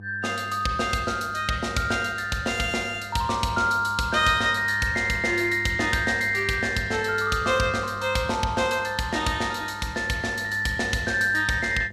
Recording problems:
electrical hum; 50 Hz, harmonics up to 700 Hz, SNR 18 dB

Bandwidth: 14.5 kHz